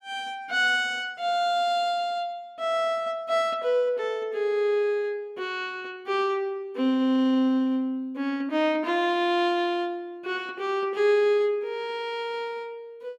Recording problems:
none

